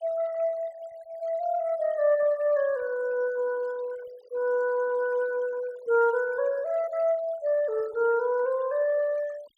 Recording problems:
noise reduction artefacts; signal-to-artefact ratio 23 dB

